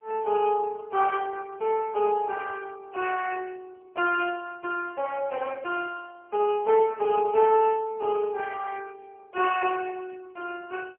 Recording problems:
telephone audio; 370 Hz to 3.2 kHz, AMR-NB

